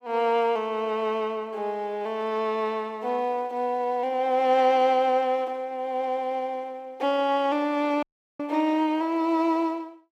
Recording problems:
audio cutting out; at 8 s

